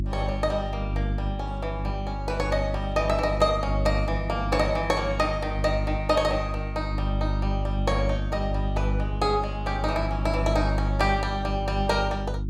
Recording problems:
mains hum; 50 Hz, harmonics up to 350 Hz, SNR 2 dB

